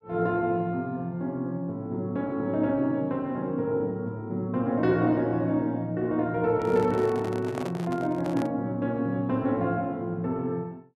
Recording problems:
microphone handling noise; from 6.5 to 8.5 s; peak -3 dB vs average level

